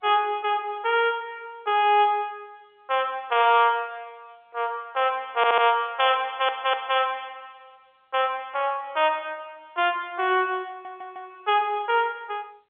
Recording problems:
phone line; 320 Hz to 3.5 kHz, G.711
stutter; at 5.5 s, at 6 s and at 11 s

